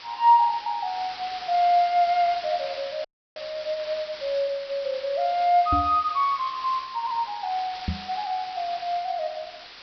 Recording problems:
treble cut off; nothing above 5.5 kHz
background hiss; SNR 14 dB
dropout; at 3 s
knock on the microphone; at 5.5 s and at 8 s; peak 0 dB vs average level

